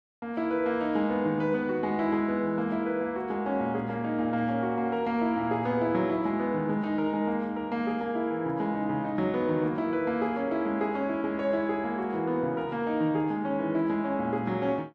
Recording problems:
none

